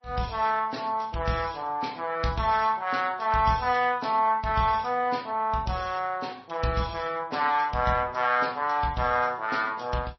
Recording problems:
lossy codec; MP3, then Vorbis, log-spectral distance 4 dB, nothing above 5.8 kHz

